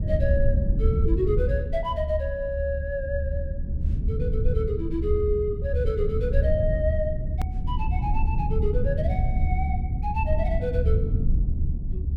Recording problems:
low-frequency rumble; below 90 Hz, SNR -3 dB
hard cut with a click; at 7.5 s

